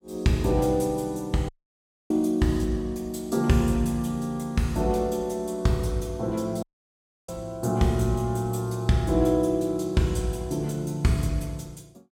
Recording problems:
dropout; at 1.5 s for 0.5 s and at 6.5 s for 0.5 s

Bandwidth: 16 kHz